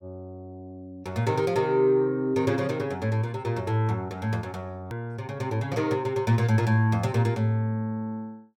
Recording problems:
hard cut with a click; at 5 s

